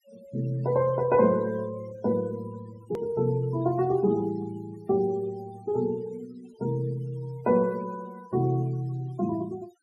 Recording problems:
denoising artefacts; signal-to-artefact ratio 23 dB
edit click; at 3 s

